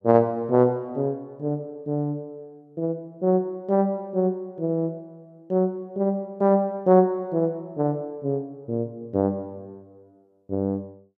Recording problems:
none

